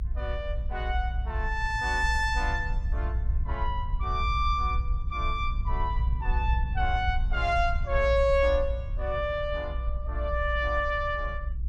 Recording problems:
rumble; below 60 Hz, SNR 2 dB

